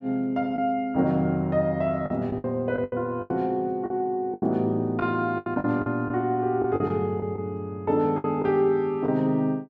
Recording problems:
lost packets; 9% of the sound replaced, filled with the last packet

